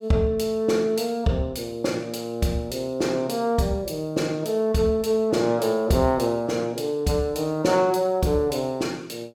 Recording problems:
none

